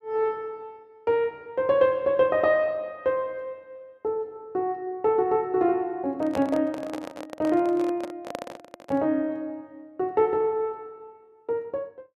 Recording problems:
handling noise; from 6 to 9 s; peak -3 dB vs average level

